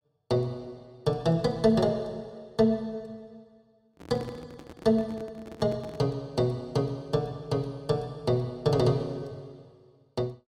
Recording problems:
handling noise; from 4 to 6 s; peak -9 dB vs average level

